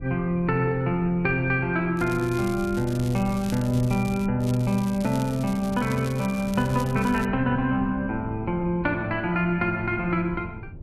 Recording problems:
wind on the microphone; below 170 Hz, SNR 15 dB
crackle; from 2 to 4.5 s and from 4.5 to 7.5 s; loose cable, SNR 18 dB

